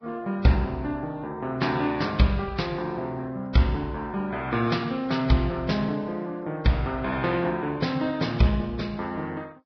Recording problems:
lossy codec; MP2, then Vorbis, log-spectral distance 3 dB, nothing above 5.5 kHz

